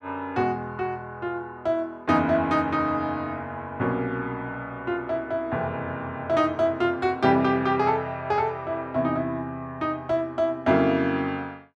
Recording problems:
none

